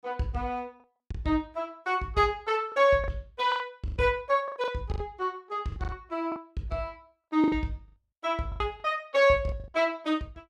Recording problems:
packet loss; 10% of the sound replaced, filled with the last packet

